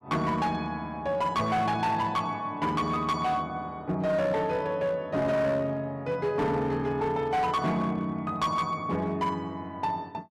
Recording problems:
distortion; hard clipping, signal-to-distortion ratio 11 dB

